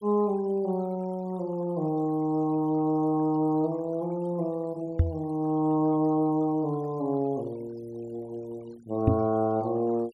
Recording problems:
denoising artefacts; signal-to-artefact ratio 28 dB
microphone thump; at 5 s and at 9 s; peak +8 dB vs average level

